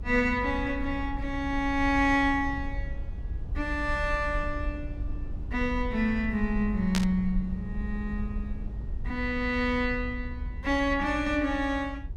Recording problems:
low-frequency rumble; below 70 Hz, SNR 8 dB
static burst; at 7 s; peak +2 dB vs average level

